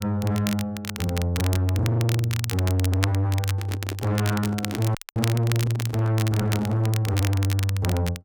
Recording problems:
distorted audio; soft clipping, signal-to-distortion ratio 6 dB
crackle; vinyl, SNR 10 dB
handling noise; from 3.5 to 7 s; peak -4 dB vs average level
dropout; at 5 s

